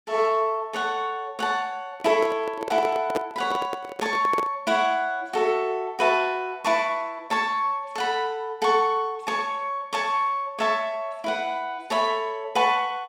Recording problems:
handling noise; from 2 to 4.5 s; peak +2 dB vs average level

